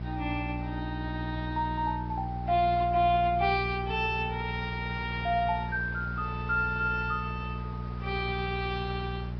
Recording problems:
treble cut off; nothing above 5 kHz
lossy codec; AAC, log-spectral distance 4 dB
electrical hum; 60 Hz, harmonics up to 420 Hz, SNR 6 dB
background hiss; SNR 21 dB

